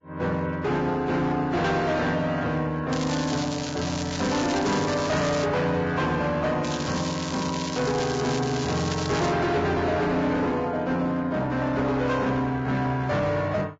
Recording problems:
lossy compression; Vorbis, log-spectral distance 5 dB, nothing above 7.3 kHz
distorted audio; hard clipping, uneven, signal-to-distortion ratio 9 dB
crackling; from 3 to 5.5 s and from 6.5 to 9.5 s; loose cable, SNR 9 dB

